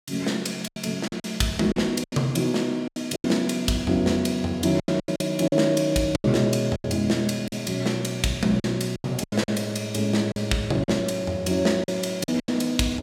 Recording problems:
lost packets; 10% of the sound replaced, filled with silence

